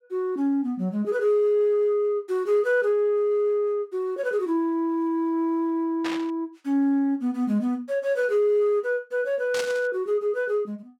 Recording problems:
static burst; at 6 s and at 9.5 s; peak -3 dB vs average level

